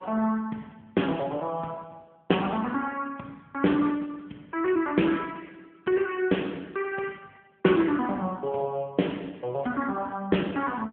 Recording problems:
telephone audio; 150 Hz to 3.4 kHz, AMR-NB

